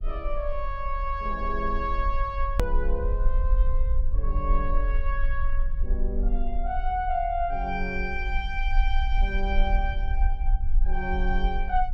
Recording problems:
low-frequency rumble; below 44 Hz, strongest tone 22 Hz, SNR -2 dB
hard cut with a click; at 2.5 s

